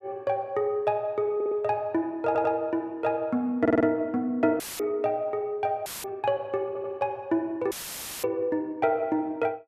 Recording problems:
audio stuttering; 4 times, first at 1.5 s
dropout; at 4.5 s, at 6 s and at 7.5 s for 0.5 s; filled with static

